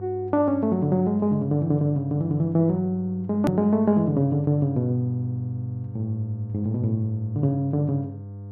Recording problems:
hum; 50 Hz, harmonics up to 700 Hz, SNR 14 dB
edit click; at 3.5 s

